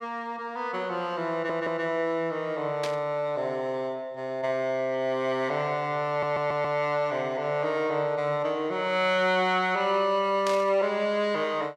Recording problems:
audio stuttering; at 1.5 s and at 6 s
static burst; at 3 s and at 10 s; peak -4 dB vs average level

